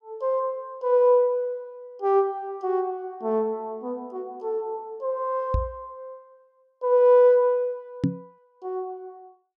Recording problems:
microphone bump; at 5.5 s and at 8 s; peak +4 dB vs average level

